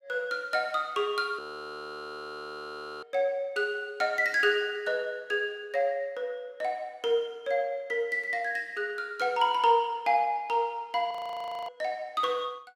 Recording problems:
audio freezing; at 1.5 s for 1.5 s and at 11 s for 0.5 s

